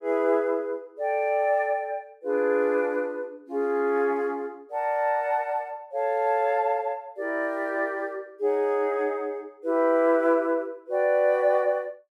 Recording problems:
none

